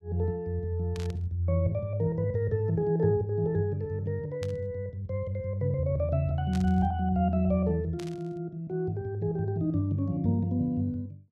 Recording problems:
burst of static; 4 times, first at 1 s; peak -10 dB vs average level

